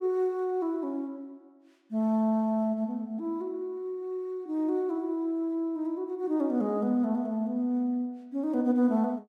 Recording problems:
none

